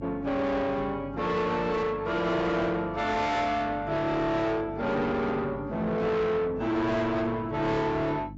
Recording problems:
lossy compression; AAC, log-spectral distance 2 dB, nothing above 7.6 kHz
distortion; soft clipping, signal-to-distortion ratio 8 dB
hum; 50 Hz, harmonics up to 600 Hz, SNR 16 dB

